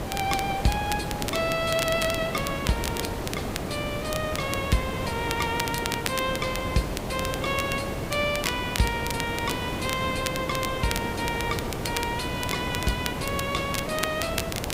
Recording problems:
hiss; slope -7 dB per octave, SNR 3 dB
crackling; vinyl, SNR 7 dB

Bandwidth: 15.5 kHz